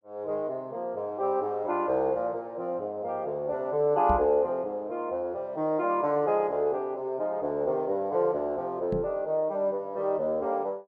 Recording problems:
knock on the microphone; at 4 s and at 9 s; peak 0 dB vs average level

